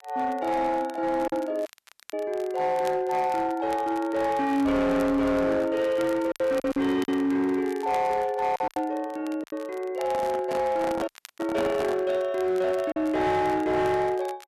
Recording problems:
distortion; hard clipping, signal-to-distortion ratio 11 dB
crackling; vinyl, SNR 23 dB
packet loss; 3% of the sound replaced, filled with silence
dropout; at 1.5 s and at 11 s
handling noise; from 10 to 12 s; peak -2 dB vs average level

